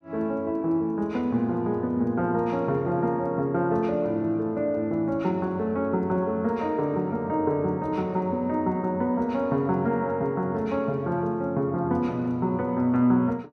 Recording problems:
none

